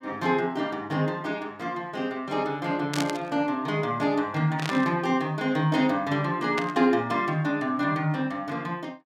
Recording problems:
burst of static; at 3 s, at 4.5 s and at 6.5 s; peak -1 dB vs average level

